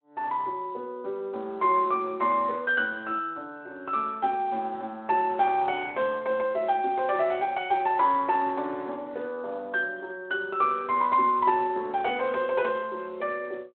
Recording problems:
phone line; 280 Hz to 3.2 kHz, Speex

